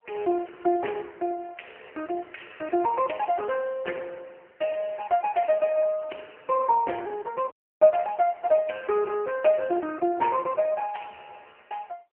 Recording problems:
telephone audio; 280 Hz to 2.9 kHz, AMR-NB
audio cutting out; at 7.5 s

